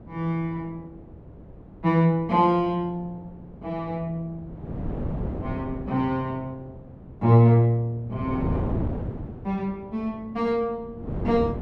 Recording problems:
wind on the microphone; below 320 Hz, SNR 9 dB

